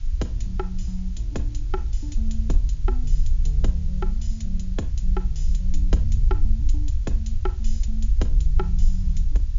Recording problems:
treble cut off; nothing above 7.1 kHz
background hiss; slope +1 dB per octave, SNR 21 dB
rumble; below 54 Hz, SNR -9 dB

